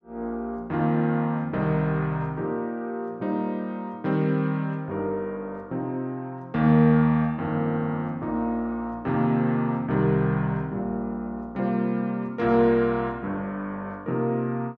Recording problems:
none

